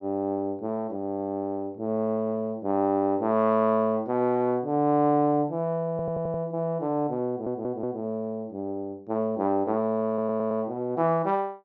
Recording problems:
treble missing; nothing above 7.6 kHz
audio stuttering; at 6 s, at 7.5 s and at 10 s

